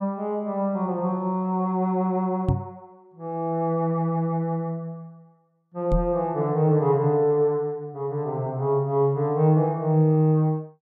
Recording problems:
knock on the microphone; at 2.5 s and at 6 s; peak +4 dB vs average level

